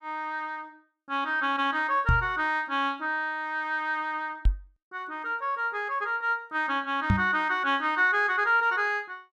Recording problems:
microphone bump; at 2 s, at 4.5 s and at 7 s; peak +6 dB vs average level

